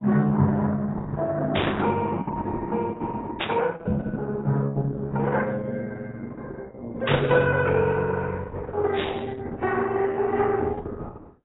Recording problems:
lossy codec; Opus, then AAC, log-spectral distance 4 dB, nothing above 3.5 kHz
burst of static; 4 times, first at 1.5 s; peak +2 dB vs average level

